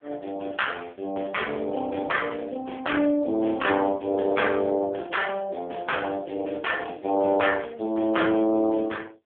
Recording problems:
phone line; 240 Hz to 3.4 kHz, AMR-NB

